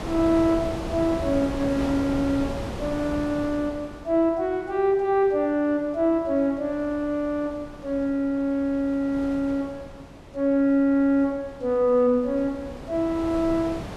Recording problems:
wind on the microphone; below 720 Hz, SNR 12 dB

